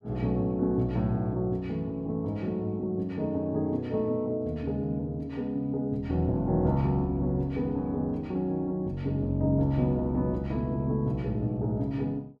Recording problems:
none

